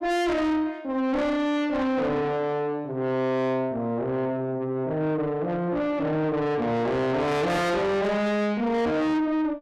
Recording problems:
distortion; soft clipping, signal-to-distortion ratio 7 dB

